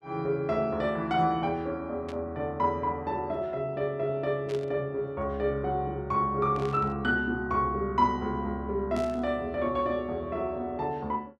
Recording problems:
static burst; 4 times, first at 2 s; peak -11 dB vs average level

